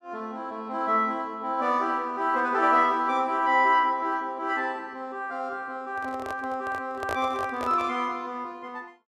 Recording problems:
microphone handling noise; from 6 to 8 s; peak -2 dB vs average level

